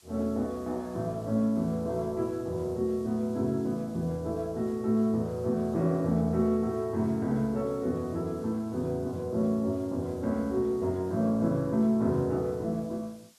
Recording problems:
hiss; slope +1 dB per octave, SNR 28 dB

